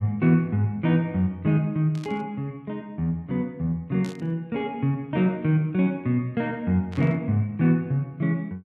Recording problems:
burst of static; at 2 s, at 4 s and at 7 s; peak -14 dB vs average level

